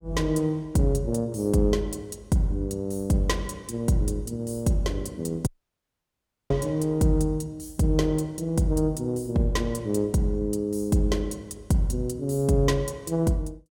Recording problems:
audio cutting out; at 5.5 s for 1 s

